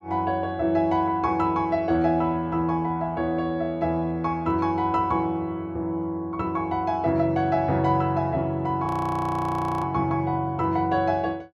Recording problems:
frozen audio; at 9 s for 1 s

